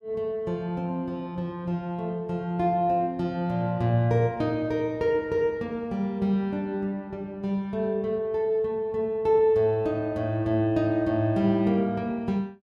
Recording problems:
none

